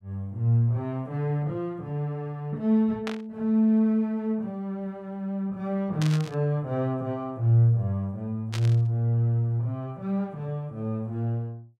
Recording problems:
static burst; at 3 s, at 6 s and at 8.5 s; peak -4 dB vs average level

